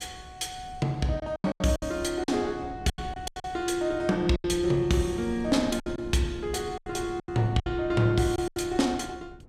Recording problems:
wind on the microphone; below 190 Hz, SNR 17 dB
packet loss; 10% of the sound replaced, filled with silence

